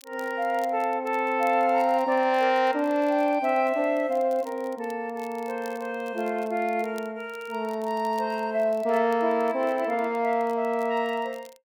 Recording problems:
crackling; vinyl, SNR 28 dB

